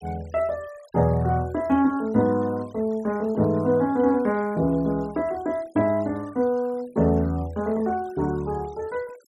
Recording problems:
denoising artefacts; signal-to-artefact ratio 26 dB

